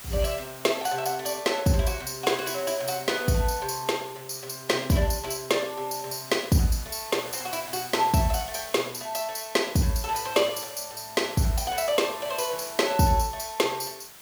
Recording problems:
background hiss; slope 0 dB per octave, SNR 15 dB

